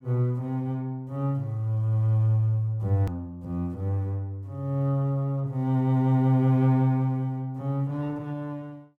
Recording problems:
hard cut with a click; at 3 s

